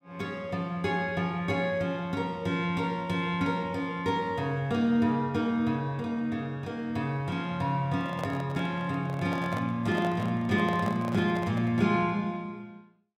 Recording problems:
handling noise; from 8 to 12 s; peak -3 dB vs average level

